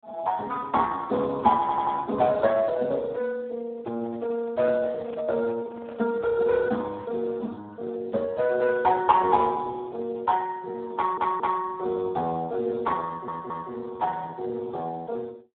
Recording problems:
telephone audio; 280 Hz to 2.5 kHz, Speex
stutter; at 1.5 s, at 11 s and at 13 s
handling noise; from 4 to 6 s; peak -13 dB vs average level

